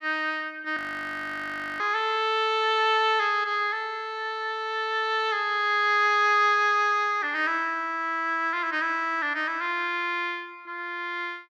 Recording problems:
audio freezing; at 1 s for 1 s

